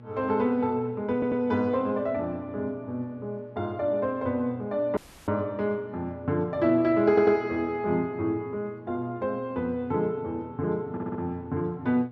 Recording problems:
hum; 60 Hz, harmonics up to 1.1 kHz, SNR 20 dB
stutter; at 1 s, at 7 s and at 11 s
audio cutting out; at 5 s

